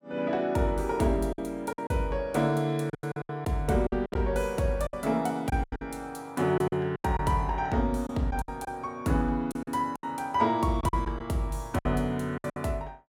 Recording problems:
packet loss; 11% of the sound replaced, filled with silence

